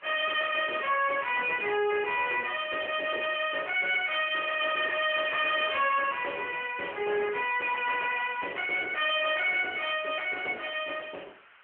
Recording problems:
phone line; 300 Hz to 3.3 kHz, AMR-NB
distorted audio; hard clipping, uneven, signal-to-distortion ratio 9 dB
background hiss; SNR 27 dB

